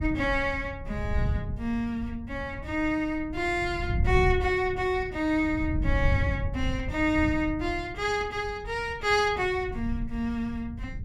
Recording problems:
wind noise; below 110 Hz, SNR 6 dB

